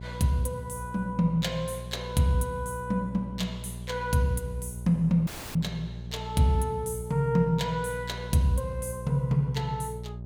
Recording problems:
electrical hum; 60 Hz, harmonics up to 600 Hz, SNR 11 dB
audio cutting out; at 5.5 s

